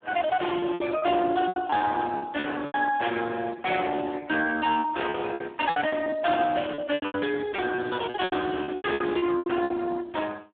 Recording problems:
telephone audio; 260 Hz to 2.9 kHz, Speex
packet loss; 14% of the sound replaced, filled with repeated pitch periods

